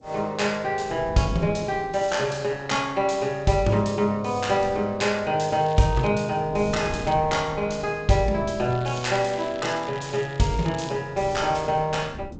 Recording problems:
lossy compression; G.722, log-spectral distance 5 dB, nothing above 7.8 kHz
wind noise; below 260 Hz, SNR 16 dB
crackle; at 5.5 s, at 6.5 s and from 8.5 to 11 s; loose cable, SNR 20 dB

